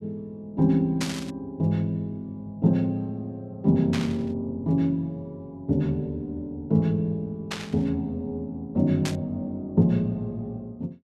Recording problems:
burst of static; 4 times, first at 1 s; peak 0 dB vs average level

